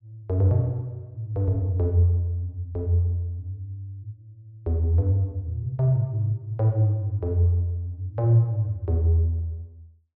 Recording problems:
treble cut off; nothing above 5.5 kHz

